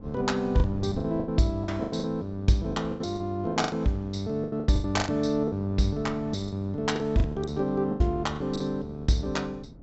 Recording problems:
low-pass filter; nothing above 7.7 kHz
wind on the microphone; below 210 Hz, SNR 18 dB
lost packets; 14% of the sound replaced, filled with the last packet

